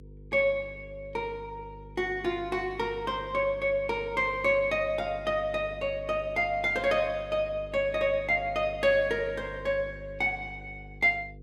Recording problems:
hum; 50 Hz, harmonics up to 500 Hz, SNR 18 dB

